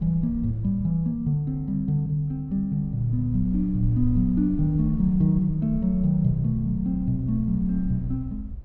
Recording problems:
low-frequency rumble; below 74 Hz, SNR 13 dB

